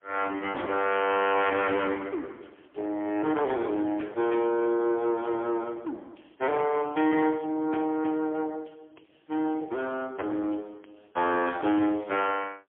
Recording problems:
phone line; 260 Hz to 3.3 kHz, AMR-NB, then MP3
distortion; soft clipping, signal-to-distortion ratio 12 dB

